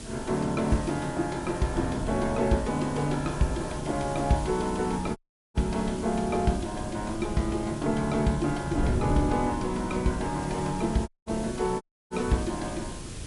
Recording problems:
codec artefacts; MP3, log-spectral distance 7 dB, nothing above 10.7 kHz
background hiss; slope 0 dB per octave, SNR 16 dB
wind noise; below 270 Hz, SNR 8 dB
audio cutting out; at 5 s, at 11 s and at 12 s

